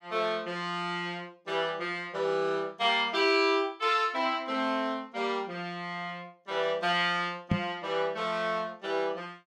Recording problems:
microphone bump; at 7.5 s; peak +6 dB vs average level

